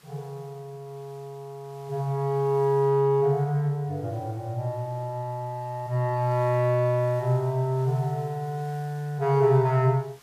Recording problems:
background hiss; slope -2 dB per octave, SNR 29 dB

